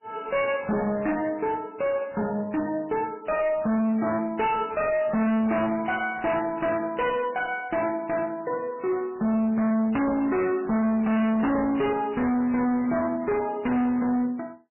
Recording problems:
lossy codec; MP3, log-spectral distance 3 dB, nothing above 2.5 kHz
distorted audio; hard clipping, signal-to-distortion ratio 6 dB

